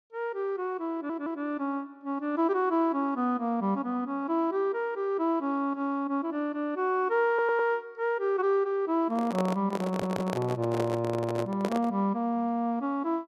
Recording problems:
stutter; at 1 s, at 7.5 s and at 10 s
microphone handling noise; from 9 to 12 s; peak 0 dB vs average level

